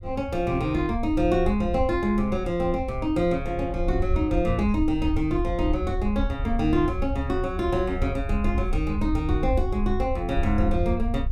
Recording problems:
low-frequency rumble; below 76 Hz, SNR 5 dB

